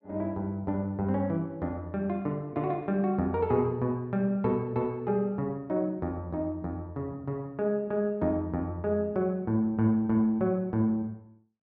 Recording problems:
none

